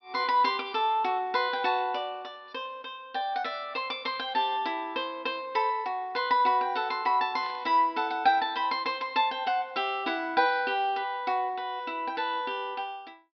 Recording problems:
treble missing; nothing above 5.5 kHz
burst of static; at 7.5 s; peak -14 dB vs average level

